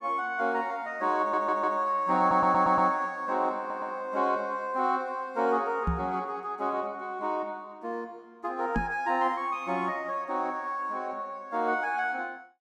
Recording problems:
stutter; at 1 s, at 2 s and at 3.5 s
knock on the microphone; at 6 s and at 9 s; peak +3 dB vs average level

